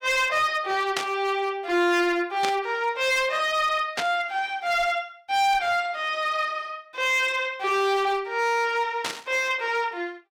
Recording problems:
distorted audio; hard clipping, signal-to-distortion ratio 11 dB
burst of static; 4 times, first at 1 s; peak +1 dB vs average level

